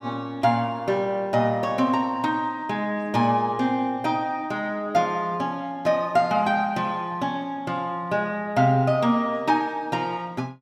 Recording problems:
none

